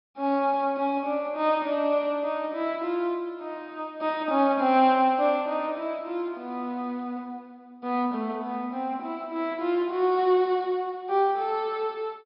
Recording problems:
treble cut off; nothing above 5.5 kHz

